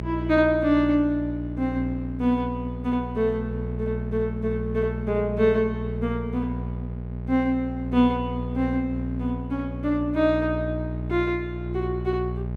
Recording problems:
hum; 60 Hz, harmonics up to 840 Hz, SNR 7 dB

